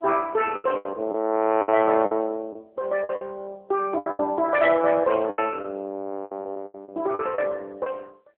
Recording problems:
telephone audio; 300 Hz to 2.6 kHz, AMR-NB
lost packets; 12% of the sound replaced, filled with the last packet

